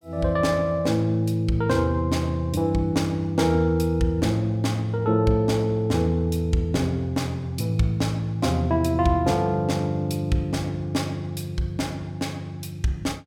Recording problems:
none

